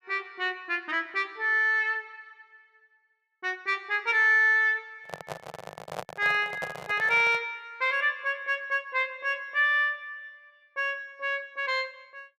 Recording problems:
microphone handling noise; from 5 to 7.5 s; peak -5 dB vs average level

